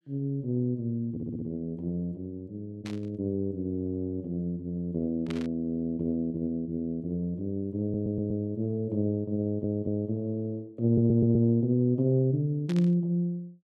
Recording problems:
stutter; 4 times, first at 1 s
static burst; at 3 s, at 5.5 s and at 13 s; peak -8 dB vs average level

